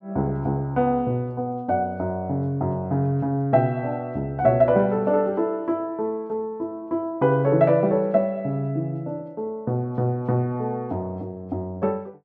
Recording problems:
none

